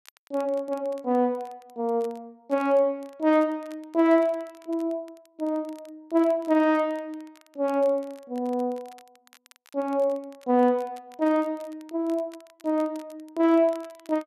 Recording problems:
crackling; vinyl, SNR 30 dB

